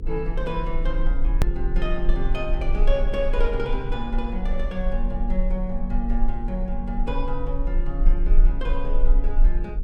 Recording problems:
hum; 50 Hz, harmonics up to 500 Hz, SNR 7 dB
low-frequency rumble; below 34 Hz, strongest tone 18 Hz, SNR -3 dB
edit click; at 1.5 s

